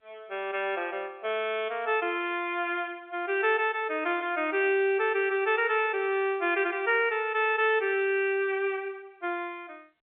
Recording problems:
phone line; 320 Hz to 3.4 kHz, G.711

